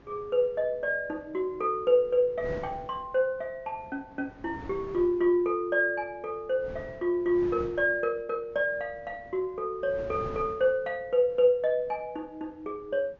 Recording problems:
treble cut off; nothing above 7 kHz
wind noise; below 540 Hz, SNR 20 dB

